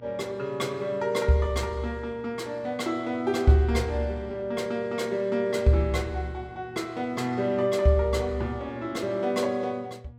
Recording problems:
hum; 60 Hz, harmonics up to 960 Hz, SNR 22 dB

